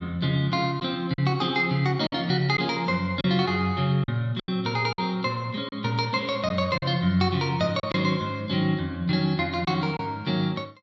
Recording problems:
lost packets; 4% of the sound replaced, filled with silence

